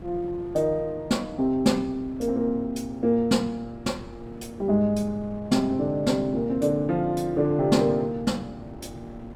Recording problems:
wind noise; below 310 Hz, SNR 19 dB

